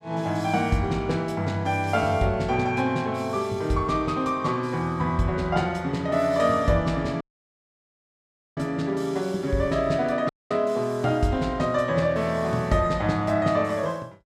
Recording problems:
audio cutting out; at 7 s for 1.5 s and at 10 s

